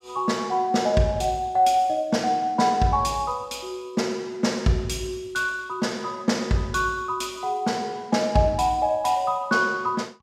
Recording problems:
none

